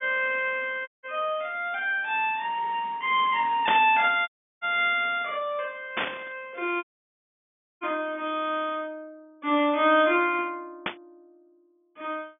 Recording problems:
treble missing; nothing above 3.5 kHz
dropout; at 1 s, at 4.5 s and at 7 s for 1 s
static burst; at 3.5 s, at 6 s and at 11 s; peak +3 dB vs average level

